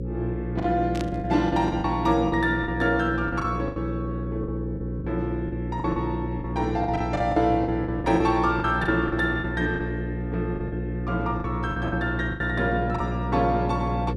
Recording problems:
electrical hum; 60 Hz, harmonics up to 540 Hz, SNR 5 dB
packet loss; 11% of the sound replaced, filled with the last packet
static burst; at 1 s; peak -6 dB vs average level

